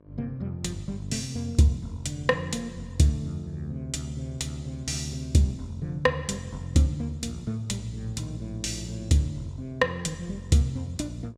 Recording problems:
hum; 50 Hz, harmonics up to 1.6 kHz, SNR 29 dB

